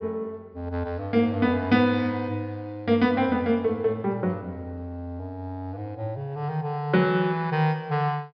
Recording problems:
low-pass filter; nothing above 5.5 kHz

